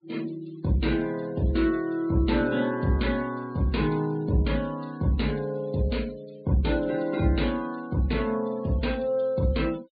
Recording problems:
treble missing; nothing above 4.5 kHz
noise reduction artefacts; signal-to-artefact ratio 24 dB

